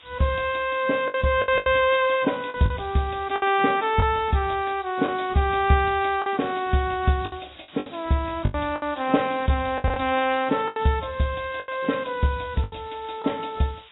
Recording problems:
lossy compression; AAC, log-spectral distance 14 dB, nothing above 3.7 kHz
hiss; SNR 23 dB
lost packets; 8% of the sound replaced, filled with the last packet

